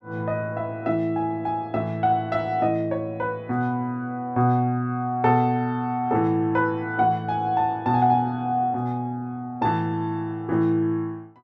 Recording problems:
none

